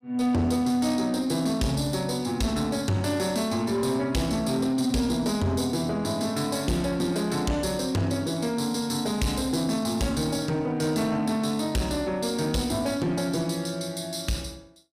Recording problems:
distorted audio; soft clipping, signal-to-distortion ratio 11 dB

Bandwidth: 15 kHz